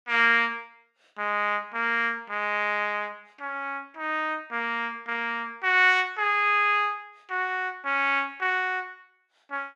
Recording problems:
none

